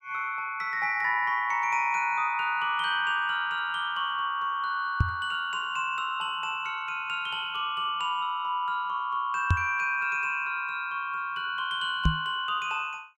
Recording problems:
microphone bump; at 5 s, at 9.5 s and at 12 s; peak +8 dB vs average level

